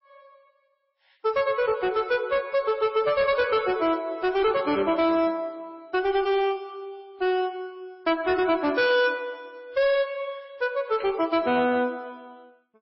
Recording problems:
lossy compression; MP3, log-spectral distance 2 dB, nothing above 4.9 kHz
distortion; hard clipping, signal-to-distortion ratio 11 dB
burst of static; at 9 s and at 11 s; peak -13 dB vs average level

